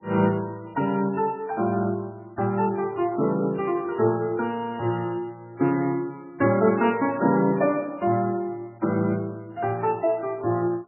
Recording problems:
codec artefacts; MP3, log-spectral distance 2 dB, nothing above 2.4 kHz

